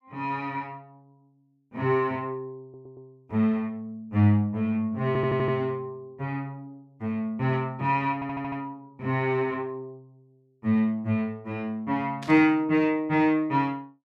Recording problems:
audio stuttering; at 2.5 s, at 5 s and at 8 s
burst of static; at 12 s; peak -11 dB vs average level

